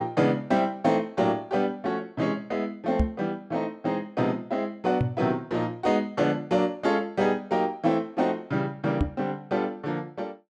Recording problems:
knock on the microphone; at 3 s, at 5 s and at 9 s; peak +6 dB vs average level

